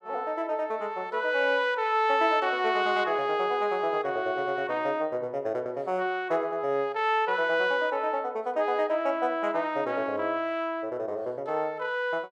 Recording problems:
none

